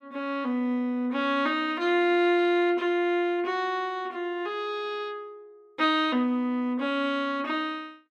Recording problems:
none

